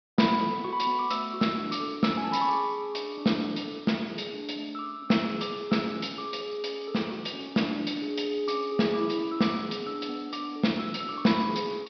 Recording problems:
treble cut off; nothing above 5.5 kHz

